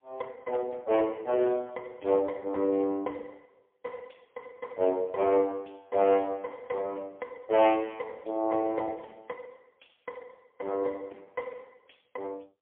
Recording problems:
telephone audio; 300 Hz to 3.4 kHz, AMR-NB, then MP3

